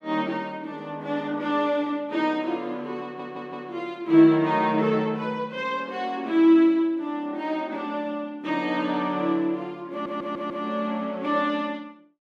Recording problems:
audio stuttering; at 3 s and at 10 s

